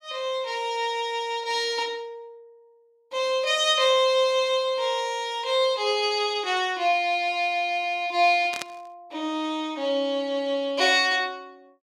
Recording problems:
burst of static; at 8.5 s; peak -4 dB vs average level

